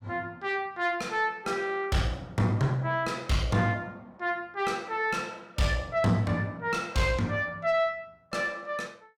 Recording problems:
distorted audio; soft clipping, signal-to-distortion ratio 9 dB

